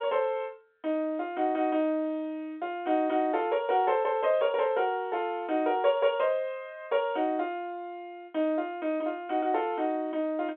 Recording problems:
phone line; 240 Hz to 3.5 kHz, G.711

